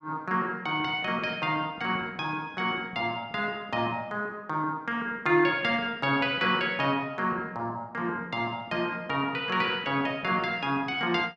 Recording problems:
none

